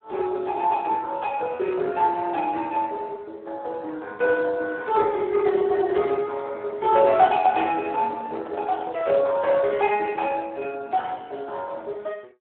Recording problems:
phone line; 280 Hz to 3.3 kHz, Speex
handling noise; from 8 to 10 s; peak -7 dB vs average level

